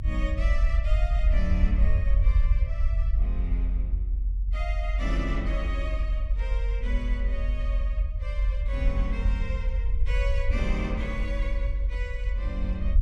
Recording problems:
low-frequency rumble; below 56 Hz, strongest tone 46 Hz, SNR -9 dB

